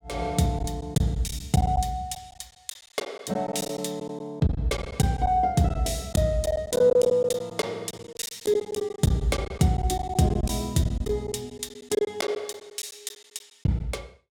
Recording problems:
packet loss; 11% of the sound replaced, filled with silence

